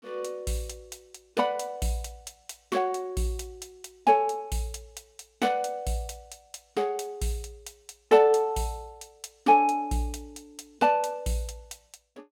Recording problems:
none

